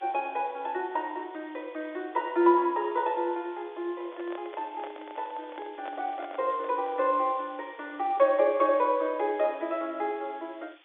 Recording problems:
phone line; 280 Hz to 3.9 kHz, G.711
background hiss; SNR 27 dB
handling noise; from 4 to 7 s; peak -9 dB vs average level

